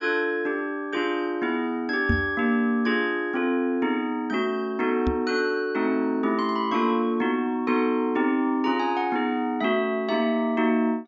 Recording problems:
treble cut off; nothing above 7.3 kHz
microphone thump; at 2 s and at 5 s; peak +4 dB vs average level

